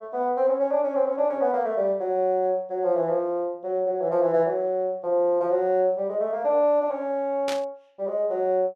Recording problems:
burst of static; at 7.5 s; peak -4 dB vs average level

